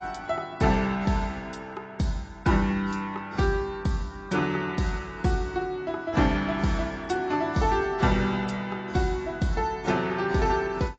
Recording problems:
lossy compression; AAC, log-spectral distance 3 dB, nothing above 7.6 kHz

